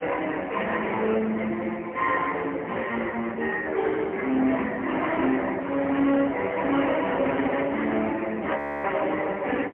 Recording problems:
telephone audio; 220 Hz to 3.1 kHz, AMR-NB, then MP3
distortion; hard clipping, signal-to-distortion ratio 12 dB
audio freezing; at 8.5 s

